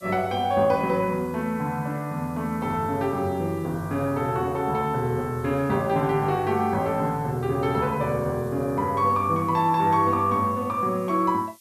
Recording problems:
background hiss; slope +4 dB per octave, SNR 27 dB

